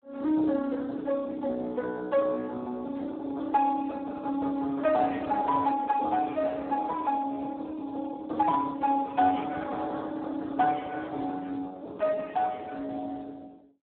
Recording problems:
phone line; 220 Hz to 2.2 kHz, Speex

